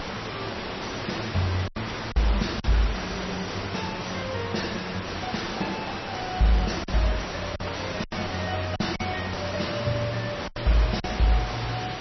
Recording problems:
lossy compression; MP3, log-spectral distance 7 dB, nothing above 5.8 kHz
distorted audio; soft clipping, signal-to-distortion ratio 0 dB
hiss; slope -4 dB per octave, SNR 4 dB
packet loss; 4% of the sound replaced, filled with silence

